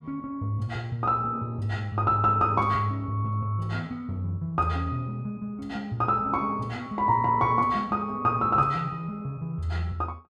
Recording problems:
none

